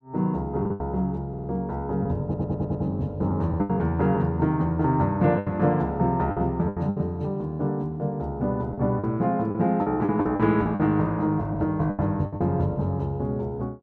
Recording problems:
lost packets; 8% of the sound replaced, filled with the last packet
audio stuttering; at 1.5 s and at 2 s

